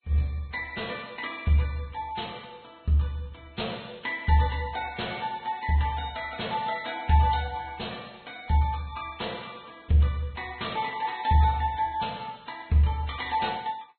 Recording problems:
lossy codec; MP2, then Vorbis, log-spectral distance 5 dB, nothing above 4.2 kHz

